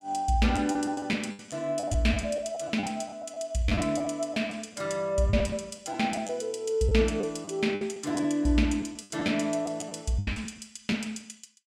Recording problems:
packet loss; 10% of the sound replaced, filled with the last packet

